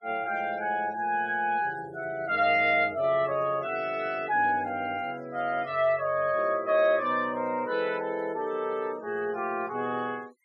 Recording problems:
denoising artefacts; signal-to-artefact ratio 26 dB

